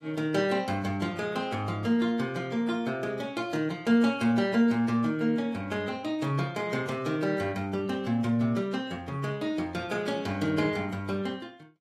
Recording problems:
codec artefacts; AAC, log-spectral distance 2 dB

